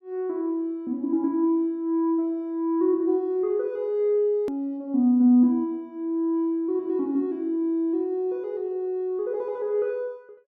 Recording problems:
edit click; at 4.5 s

